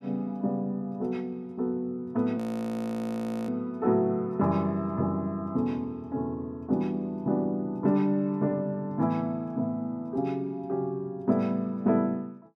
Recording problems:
frozen audio; at 2.5 s for 1 s

